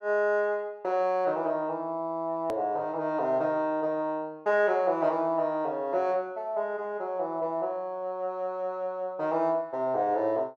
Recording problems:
edit click; at 2.5 s

